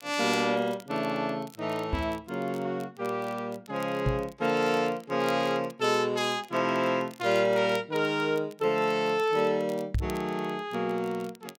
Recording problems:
crackling; vinyl, SNR 24 dB
microphone thump; at 2 s, at 4 s and at 10 s; peak +3 dB vs average level

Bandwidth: 16 kHz